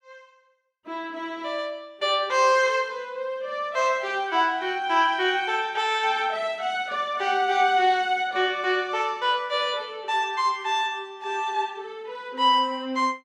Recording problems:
none

